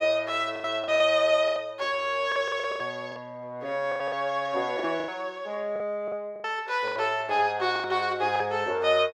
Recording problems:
lost packets; 12% of the sound replaced, filled with the last packet

